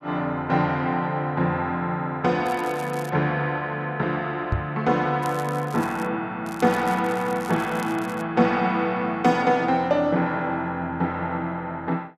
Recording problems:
crackling; at 2.5 s, at 5 s and from 6.5 to 8 s; loose cable, SNR 21 dB
microphone thump; at 4.5 s; peak +3 dB vs average level

